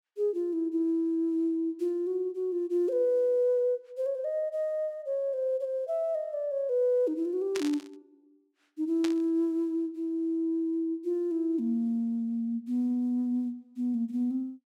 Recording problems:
static burst; at 7.5 s and at 9 s; peak -3 dB vs average level

